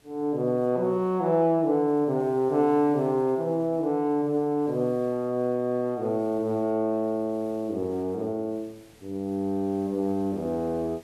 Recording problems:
hiss; SNR 30 dB

